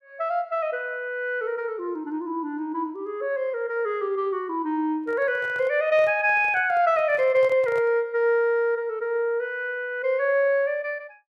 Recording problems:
handling noise; from 5 to 8 s; peak -11 dB vs average level

